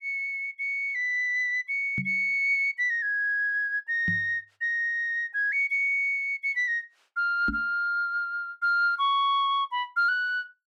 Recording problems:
knock on the microphone; at 2 s, at 4 s and at 7.5 s; peak -3 dB vs average level

